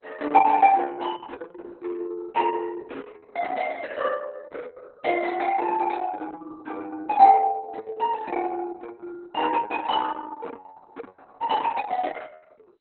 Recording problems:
lossy codec; MP2, then Opus, log-spectral distance 4 dB, nothing above 4.1 kHz

